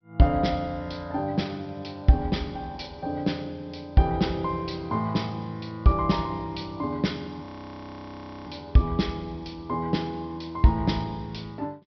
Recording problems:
treble missing; nothing above 5.5 kHz
frozen audio; at 7.5 s for 1 s

